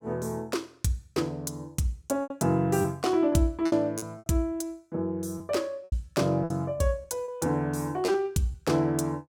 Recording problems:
lost packets; 7% of the sound replaced, filled with repeated pitch periods

